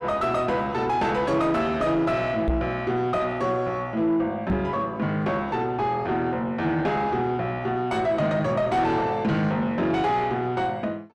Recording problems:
distorted audio; soft clipping, signal-to-distortion ratio 10 dB
microphone thump; at 2.5 s and at 4.5 s; peak +3 dB vs average level

